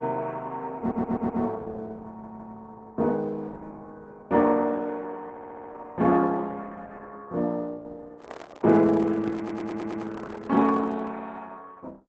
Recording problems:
lossy compression; Opus, log-spectral distance 4 dB
audio stuttering; 4 times, first at 1 s
handling noise; from 8 to 11 s; peak -10 dB vs average level

